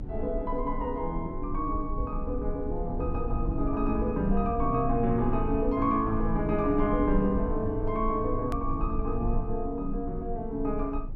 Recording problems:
treble cut off; nothing above 8 kHz
low-frequency rumble; below 62 Hz, strongest tone 24 Hz, SNR 7 dB
click at an edit; at 8.5 s

